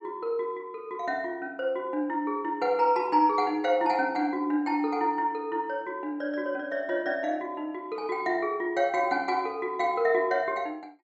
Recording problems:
none

